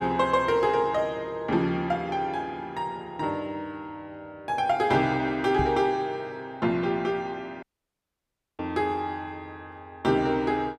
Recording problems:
microphone bump; at 5.5 s; peak +1 dB vs average level
audio cutting out; at 7.5 s for 1 s

